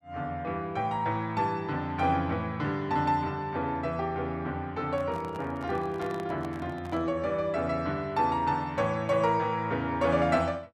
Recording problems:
microphone handling noise; from 5 to 7 s; peak -9 dB vs average level

